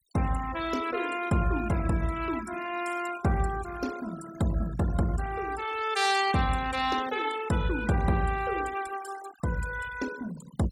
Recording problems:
denoising artefacts; signal-to-artefact ratio 13 dB

